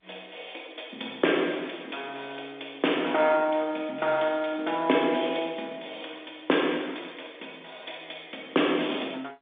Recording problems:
phone line; 220 Hz to 3.6 kHz, G.711

